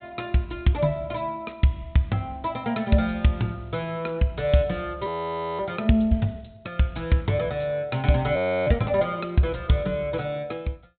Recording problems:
treble cut off; nothing above 4 kHz
frozen audio; at 5 s for 0.5 s and at 8.5 s

